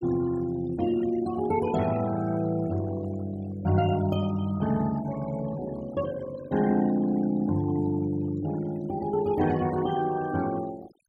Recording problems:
denoising artefacts; signal-to-artefact ratio 18 dB

